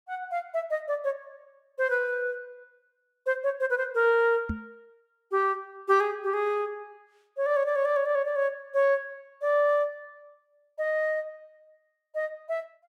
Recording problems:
microphone thump; at 4.5 s; peak -1 dB vs average level

